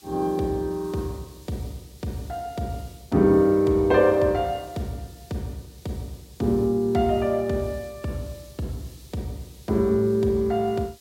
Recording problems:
hiss; SNR 26 dB

